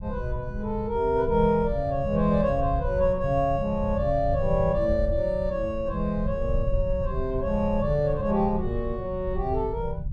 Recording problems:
rumble; below 92 Hz, SNR 7 dB

